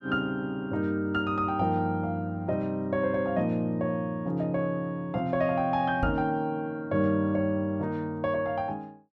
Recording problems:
microphone bump; at 6 s; peak +2 dB vs average level

